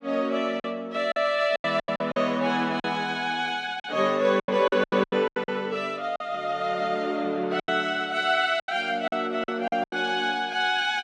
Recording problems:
packet loss; 11% of the sound replaced, filled with silence

